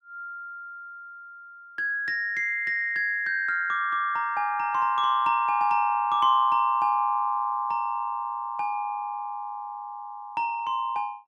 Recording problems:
none

